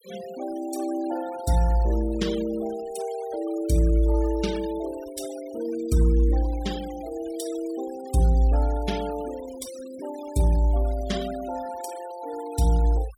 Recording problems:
denoising artefacts; signal-to-artefact ratio 17 dB

